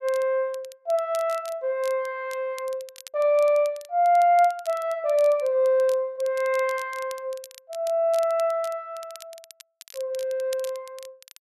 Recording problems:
crackling; vinyl, SNR 22 dB

